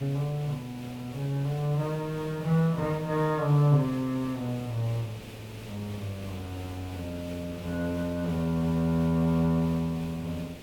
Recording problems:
background hiss; SNR 16 dB

